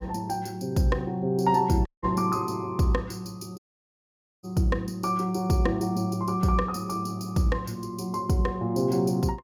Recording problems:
audio cutting out; at 2 s and at 3.5 s for 1 s

